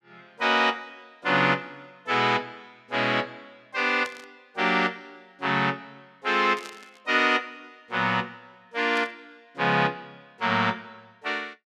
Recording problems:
static burst; at 4 s, at 6.5 s and at 9 s; peak -11 dB vs average level

